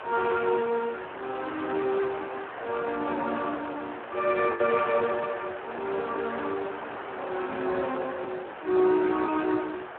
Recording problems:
telephone audio; 260 Hz to 2.8 kHz, Speex
background hiss; SNR 10 dB
lost packets; 1.8% of the sound replaced, filled with the last packet

